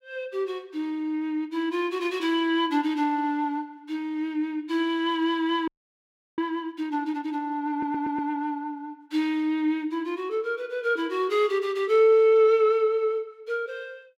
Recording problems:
frozen audio; at 5.5 s for 0.5 s
audio stuttering; at 7.5 s

